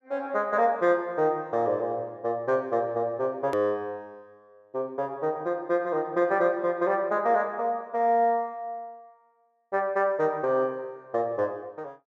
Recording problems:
hard cut with a click; at 3.5 s

